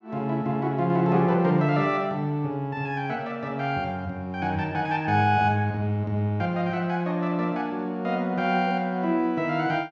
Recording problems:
none

